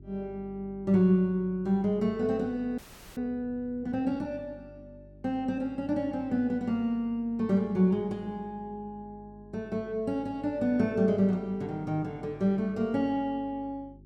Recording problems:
hum; 50 Hz, harmonics up to 400 Hz, SNR 23 dB
audio freezing; at 3 s

